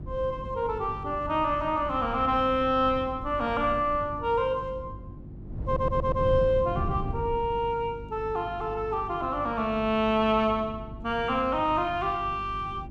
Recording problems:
mains hum; 50 Hz, harmonics up to 350 Hz, SNR 17 dB
wind on the microphone; below 160 Hz, SNR 12 dB
stutter; at 5.5 s

